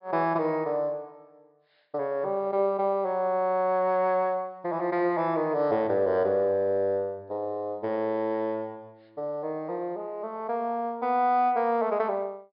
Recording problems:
low-pass filter; nothing above 5.5 kHz

